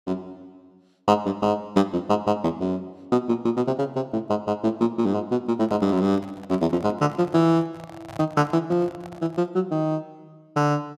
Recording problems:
handling noise; from 5.5 to 9.5 s; peak -10 dB vs average level

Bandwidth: 14 kHz